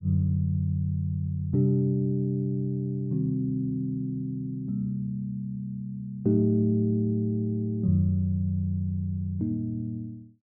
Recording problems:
none

